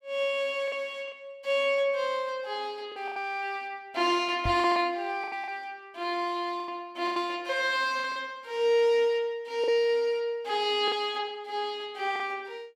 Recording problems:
lost packets; 6% of the sound replaced, filled with the last packet
microphone bump; at 4.5 s; peak -1 dB vs average level

